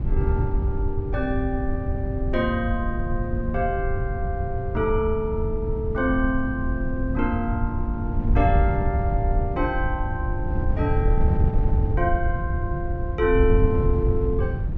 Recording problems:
treble cut off; nothing above 8 kHz
wind on the microphone; below 100 Hz, SNR -1 dB

